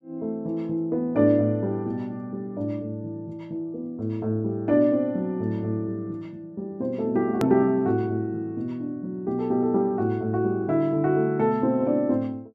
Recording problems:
hard cut with a click; at 7.5 s

